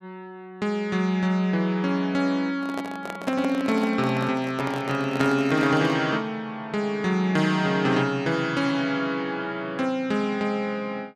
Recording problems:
handling noise; from 2.5 to 6 s; peak -1 dB vs average level

